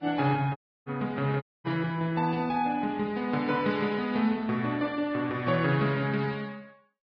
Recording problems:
lossy codec; Vorbis, log-spectral distance 2 dB
audio cutting out; at 0.5 s and at 1.5 s

